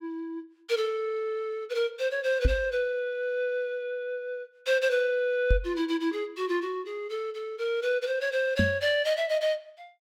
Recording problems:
microphone thump; at 2.5 s, at 5.5 s and at 8.5 s; peak +7 dB vs average level

